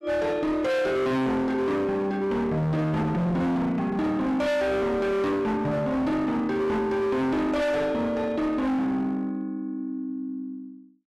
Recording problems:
distortion; hard clipping, signal-to-distortion ratio 7 dB

